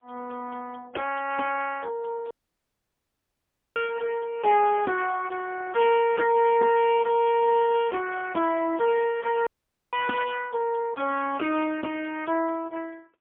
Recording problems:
phone line; 220 Hz to 2.6 kHz, AMR-NB, then MP3
dropout; at 2.5 s for 1.5 s and at 9.5 s

